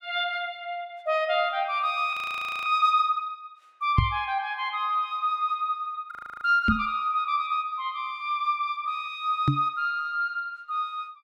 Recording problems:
audio freezing; at 2 s for 0.5 s and at 6 s
microphone bump; at 4 s, at 6.5 s and at 9.5 s; peak +8 dB vs average level

